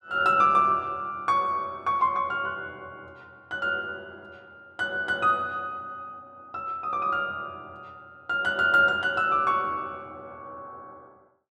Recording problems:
none

